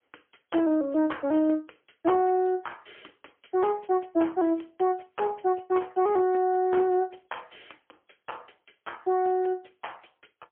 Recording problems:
phone line; 190 Hz to 3.3 kHz, AMR-NB, then MP3

